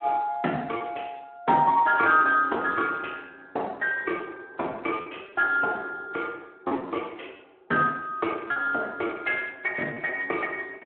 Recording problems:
phone line; 240 Hz to 3 kHz, Speex
packet loss; 5% of the sound replaced, filled with repeated pitch periods

